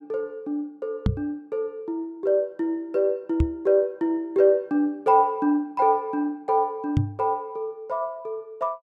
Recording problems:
microphone thump; at 1 s, at 3.5 s and at 7 s; peak +6 dB vs average level

